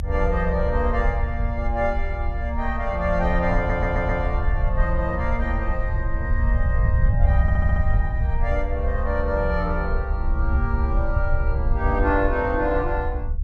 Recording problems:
low-frequency rumble; below 72 Hz, SNR -1 dB
stutter; at 3.5 s and at 7.5 s

